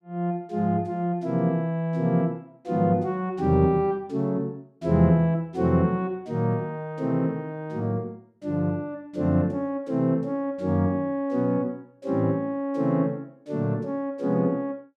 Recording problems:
none

